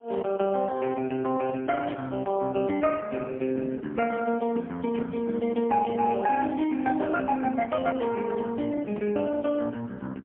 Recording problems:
phone line; 170 Hz to 3.1 kHz, AMR-NB, then MP3

